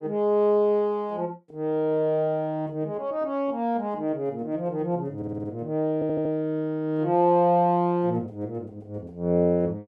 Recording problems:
stutter; at 5 s and at 6 s

